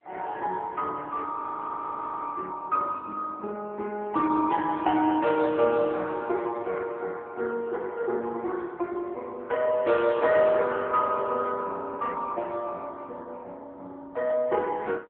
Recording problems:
phone line; 260 Hz to 3.6 kHz, AMR-NB
audio freezing; at 1.5 s for 1 s

